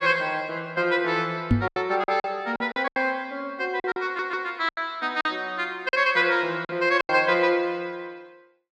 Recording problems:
packet loss; 9% of the sound replaced, filled with silence
knock on the microphone; at 1.5 s; peak +7 dB vs average level
audio stuttering; at 4 s

